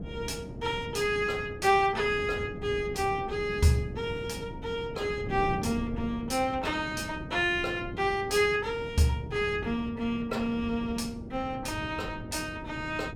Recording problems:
wind on the microphone; below 290 Hz, SNR 11 dB

